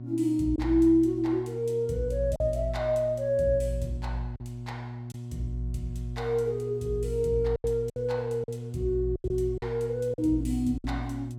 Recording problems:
electrical hum; 60 Hz, harmonics up to 600 Hz, SNR 10 dB
packet loss; 5% of the sound replaced, filled with silence

